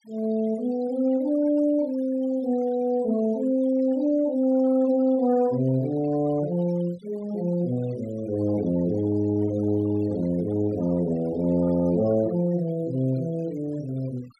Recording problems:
denoising artefacts; signal-to-artefact ratio 23 dB

